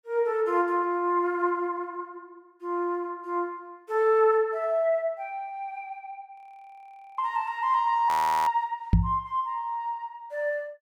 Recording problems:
frozen audio; at 6.5 s for 1 s and at 8 s
knock on the microphone; at 9 s; peak +9 dB vs average level

